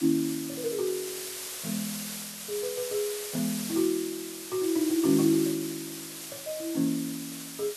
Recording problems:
hiss; SNR 6 dB

